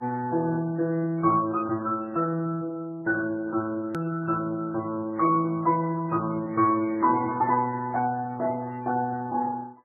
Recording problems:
codec artefacts; Speex, then MP3, log-spectral distance 3 dB, nothing above 2.2 kHz
click at an edit; at 4 s

